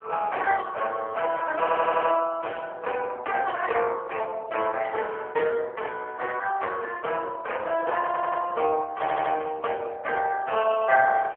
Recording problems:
telephone audio; 370 Hz to 3.1 kHz, AMR-NB
audio stuttering; at 1.5 s, at 8 s and at 9 s
static burst; at 2.5 s, at 5 s and at 9.5 s; peak -13 dB vs average level

